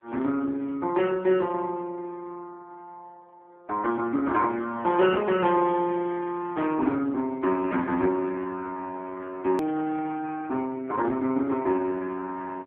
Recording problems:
phone line; 220 Hz to 3.3 kHz, AMR-NB
hard cut with a click; at 9.5 s

